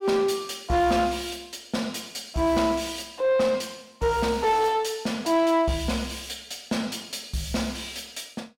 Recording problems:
distortion; soft clipping, signal-to-distortion ratio 11 dB

